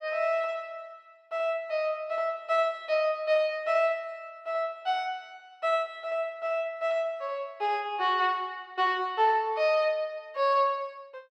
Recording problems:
none

